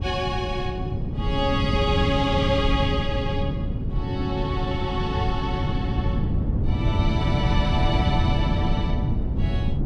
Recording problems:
wind on the microphone; below 170 Hz, SNR -2 dB

